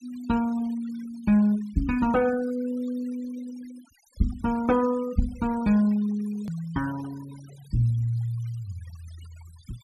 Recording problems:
noise reduction artefacts; signal-to-artefact ratio 21 dB
edit click; at 6.5 s

